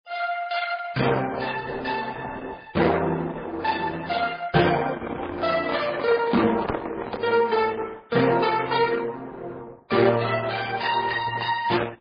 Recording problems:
codec artefacts; Opus, then MP3, log-spectral distance 5 dB, nothing above 4.8 kHz
microphone handling noise; from 5 to 7.5 s; peak -1 dB vs average level

